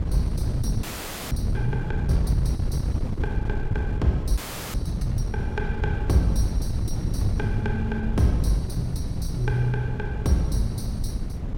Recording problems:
wind noise; below 130 Hz, SNR 1 dB
audio freezing; at 1 s and at 4.5 s

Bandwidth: 16.5 kHz